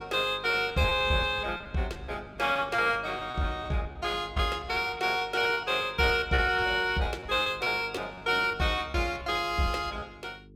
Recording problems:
electrical hum; 50 Hz, harmonics up to 450 Hz, SNR 22 dB
lost packets; 11% of the sound replaced, filled with repeated pitch periods

